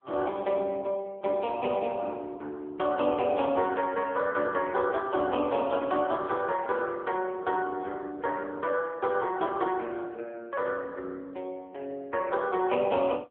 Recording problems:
phone line; 260 Hz to 3.4 kHz, AMR-NB

